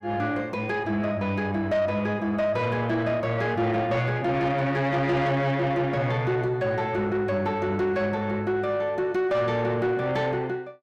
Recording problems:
distortion; soft clipping, signal-to-distortion ratio 11 dB

